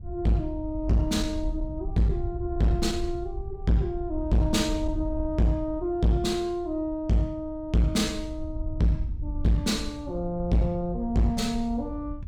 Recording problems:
distortion; soft clipping, signal-to-distortion ratio 8 dB
wind on the microphone; below 76 Hz, SNR 10 dB

